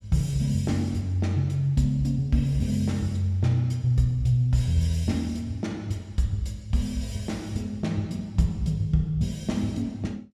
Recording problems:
none

